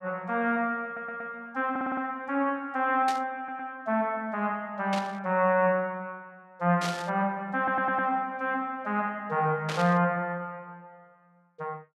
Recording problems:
stutter; 4 times, first at 1 s
static burst; 4 times, first at 3 s; peak -2 dB vs average level

